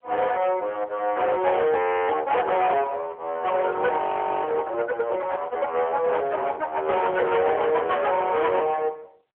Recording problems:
phone line; 340 Hz to 3.3 kHz, AMR-NB
distortion; soft clipping, signal-to-distortion ratio 9 dB
frozen audio; at 2 s and at 4 s

